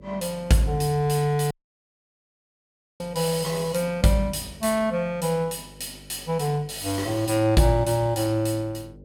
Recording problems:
electrical hum; 50 Hz, harmonics up to 600 Hz, SNR 23 dB
audio cutting out; at 1.5 s for 1.5 s

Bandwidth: 17 kHz